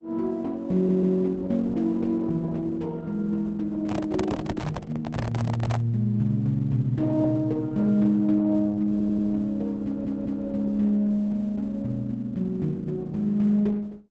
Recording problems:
lossy compression; Opus, log-spectral distance 2 dB, nothing above 7.8 kHz
audio stuttering; at 1 s, at 9 s and at 10 s
handling noise; from 4 to 6 s; peak -1 dB vs average level

